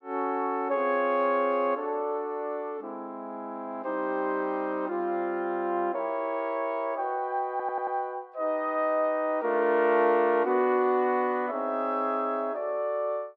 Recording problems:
audio stuttering; at 7.5 s

